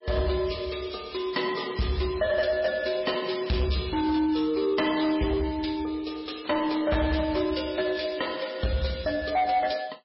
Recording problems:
codec artefacts; MP3, log-spectral distance 6 dB, nothing above 5.3 kHz
distortion; soft clipping, signal-to-distortion ratio 11 dB

